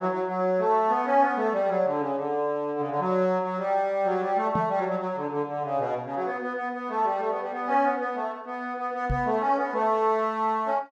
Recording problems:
microphone bump; at 4.5 s and at 9 s; peak +1 dB vs average level

